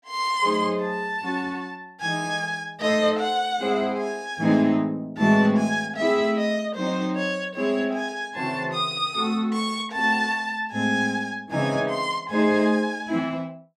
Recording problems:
none

